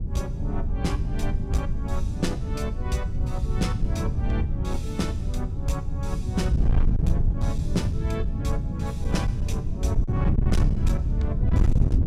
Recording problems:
distortion; hard clipping, uneven, signal-to-distortion ratio 8 dB
electrical hum; 60 Hz, harmonics up to 1 kHz, SNR 26 dB
wind on the microphone; below 110 Hz, SNR -6 dB

